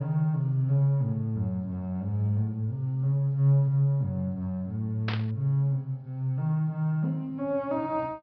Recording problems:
treble missing; nothing above 5.5 kHz
static burst; at 5 s; peak -2 dB vs average level

